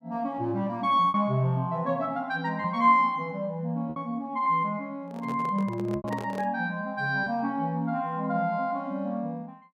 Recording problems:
packet loss; 3% of the sound replaced, filled with repeated pitch periods
handling noise; from 5 to 6.5 s; peak -6 dB vs average level

